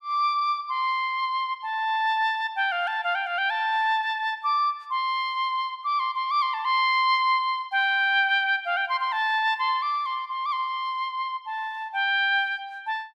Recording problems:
none

